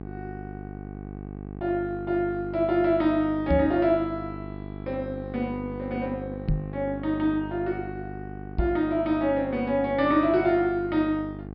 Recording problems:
treble missing; nothing above 5.5 kHz
electrical hum; 50 Hz, harmonics up to 1.2 kHz, SNR 12 dB
microphone thump; at 3.5 s, at 6.5 s and at 8.5 s; peak +4 dB vs average level

